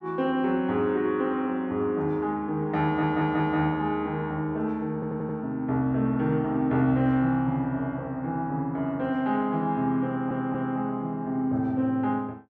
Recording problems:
audio stuttering; at 3 s, at 5 s and at 10 s

